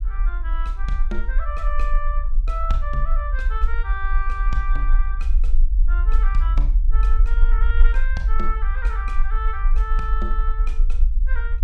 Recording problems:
low-frequency rumble; below 44 Hz, SNR -8 dB

